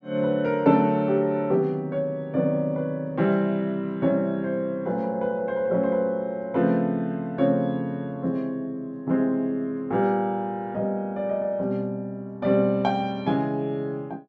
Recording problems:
none

